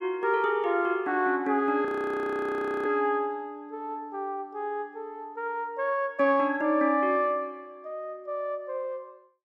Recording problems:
frozen audio; at 2 s for 1 s

